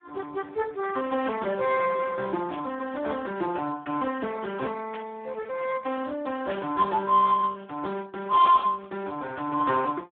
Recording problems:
phone line; 220 Hz to 3.1 kHz, Speex
burst of static; 4 times, first at 2.5 s; peak -9 dB vs average level

